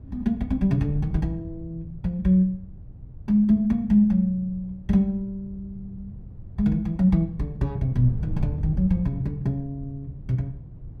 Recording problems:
wind on the microphone; below 130 Hz, SNR 14 dB

